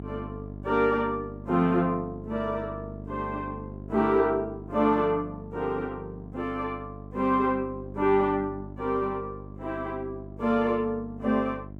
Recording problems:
mains hum; 50 Hz, harmonics up to 750 Hz, SNR 13 dB

